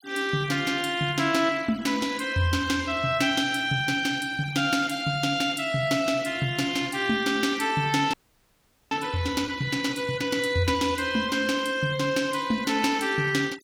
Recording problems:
noise reduction artefacts; signal-to-artefact ratio 20 dB
frozen audio; at 8 s for 1 s

